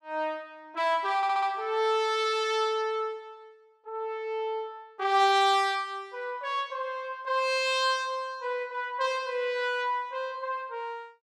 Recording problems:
audio stuttering; at 1 s

